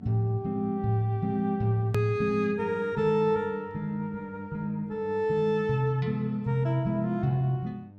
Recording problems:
mains hum; 50 Hz, harmonics up to 900 Hz, SNR 23 dB
hard cut with a click; at 2 s

